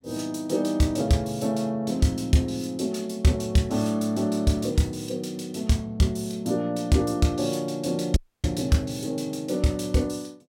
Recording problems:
audio cutting out; at 8 s

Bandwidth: 16 kHz